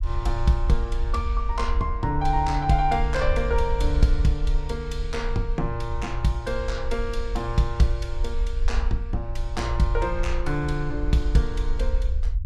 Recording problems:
low-frequency rumble; below 56 Hz, SNR 2 dB

